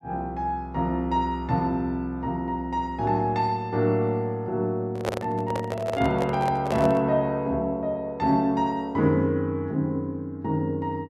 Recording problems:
handling noise; from 5 to 7 s; peak +2 dB vs average level

